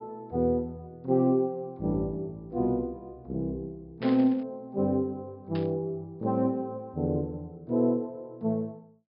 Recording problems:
treble missing; nothing above 5.5 kHz
burst of static; at 4 s and at 5.5 s; peak -7 dB vs average level

